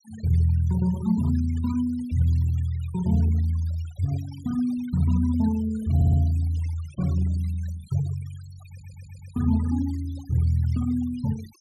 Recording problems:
denoising artefacts; signal-to-artefact ratio 24 dB
stutter; at 6 s and at 8.5 s

